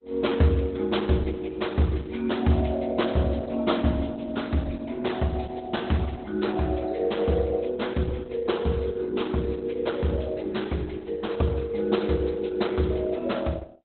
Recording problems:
lossy codec; Opus, log-spectral distance 5 dB, nothing above 4 kHz

